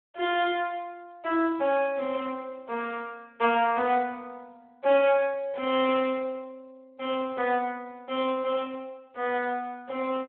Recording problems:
phone line; 280 Hz to 3.6 kHz, Speex

